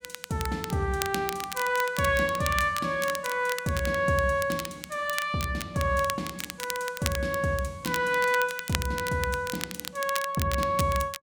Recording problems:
crackling; vinyl, SNR 9 dB

